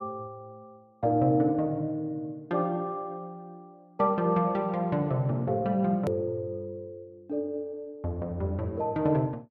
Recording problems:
click at an edit; at 6 s

